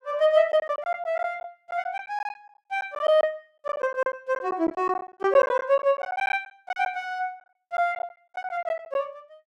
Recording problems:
lost packets; 12% of the sound replaced, filled with silence

